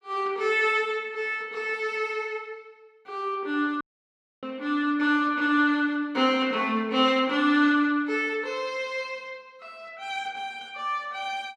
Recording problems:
dropout; at 4 s for 0.5 s

